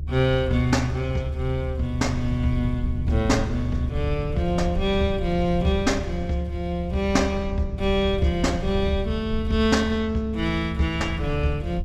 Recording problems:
rumble; below 84 Hz, SNR 6 dB

